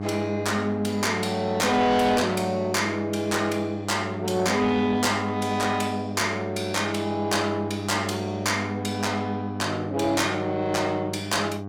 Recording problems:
distortion; soft clipping, signal-to-distortion ratio 12 dB
hum; 50 Hz, harmonics up to 1.2 kHz, SNR 8 dB

